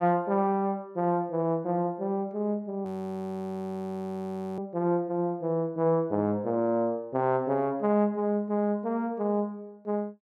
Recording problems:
frozen audio; at 3 s for 1.5 s

